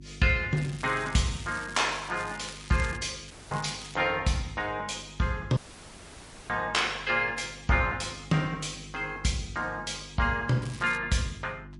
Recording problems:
lossy compression; MP3, log-spectral distance 5 dB, nothing above 11 kHz
hum; 50 Hz, harmonics up to 350 Hz, SNR 19 dB
crackle; from 0.5 to 3 s, at 3.5 s and at 11 s; loose cable, SNR 17 dB
audio cutting out; at 3.5 s and at 5.5 s for 1 s

